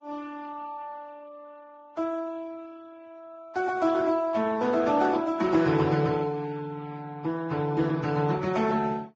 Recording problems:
codec artefacts; Speex, then Vorbis, log-spectral distance 3 dB, nothing above 7.3 kHz

